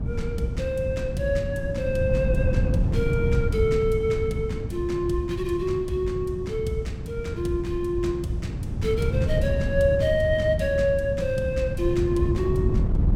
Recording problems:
wind on the microphone; below 150 Hz, SNR 2 dB

